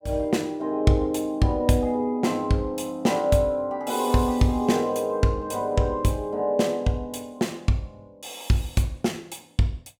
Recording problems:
none

